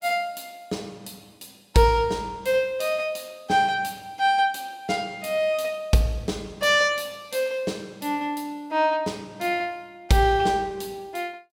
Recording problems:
none

